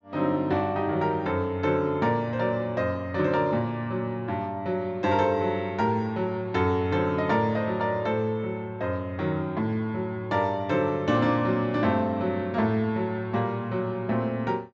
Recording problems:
treble missing; nothing above 8 kHz

